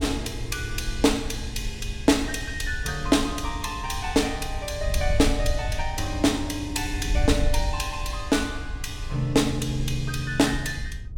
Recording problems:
wind on the microphone; below 76 Hz, SNR 7 dB

